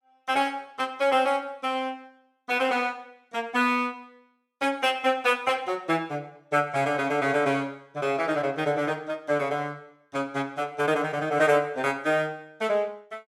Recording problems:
none

